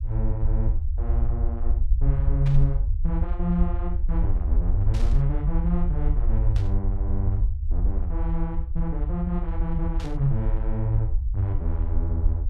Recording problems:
rumble; below 60 Hz, SNR -2 dB
static burst; 4 times, first at 2.5 s; peak -9 dB vs average level

